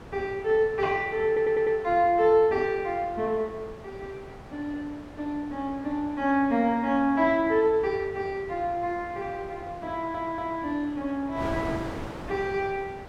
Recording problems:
wind noise; below 900 Hz, SNR 16 dB
audio stuttering; at 1.5 s and at 10 s

